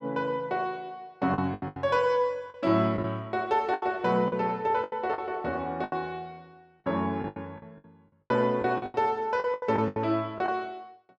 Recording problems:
lost packets; 12% of the sound replaced, filled with the last packet

